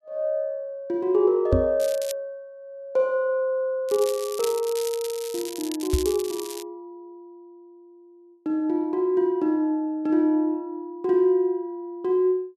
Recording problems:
knock on the microphone; at 1.5 s and at 6 s; peak +6 dB vs average level
crackle; at 2 s, from 4 to 6 s and at 6 s; loose cable, SNR 12 dB

